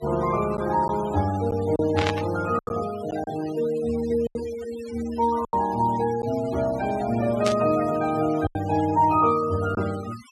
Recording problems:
noise reduction artefacts; signal-to-artefact ratio 16 dB
lost packets; 5% of the sound replaced, filled with silence
static burst; at 2 s and at 7.5 s; peak 0 dB vs average level

